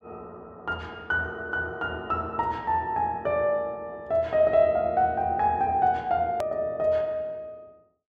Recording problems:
edit click; at 6.5 s

